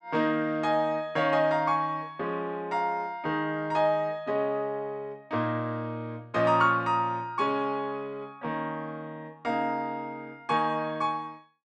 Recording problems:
none

